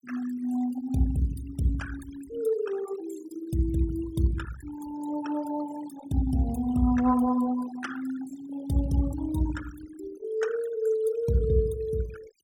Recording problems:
denoising artefacts; signal-to-artefact ratio 16 dB

